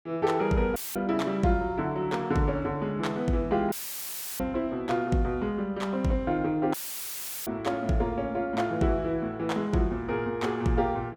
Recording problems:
dropout; at 1 s, at 3.5 s for 0.5 s and at 6.5 s for 0.5 s; filled with static

